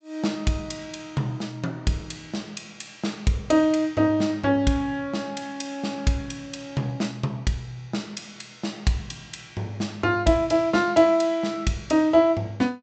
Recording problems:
low-pass filter; nothing above 8 kHz

